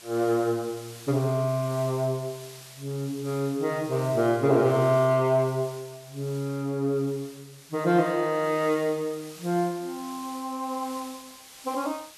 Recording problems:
background hiss; slope +1 dB per octave, SNR 19 dB

